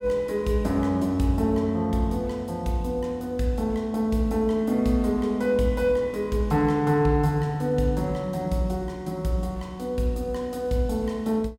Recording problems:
none

